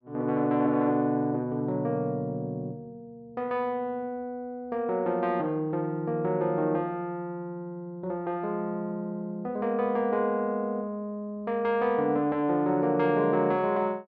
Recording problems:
none

